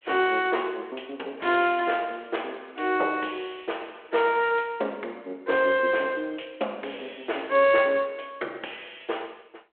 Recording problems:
telephone audio; 300 Hz to 3.4 kHz, G.726

